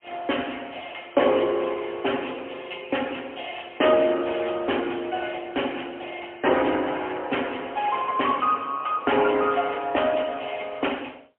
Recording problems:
telephone audio; 280 Hz to 3.2 kHz, AMR-NB, then MP3

